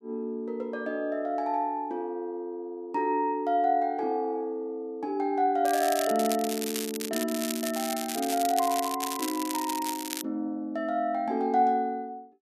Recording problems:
crackle; from 5.5 to 8 s and from 8 to 10 s; loose cable, SNR 6 dB

